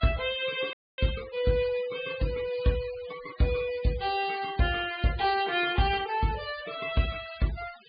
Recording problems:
treble cut off; nothing above 4.8 kHz
denoising artefacts; signal-to-artefact ratio 17 dB
audio cutting out; at 0.5 s

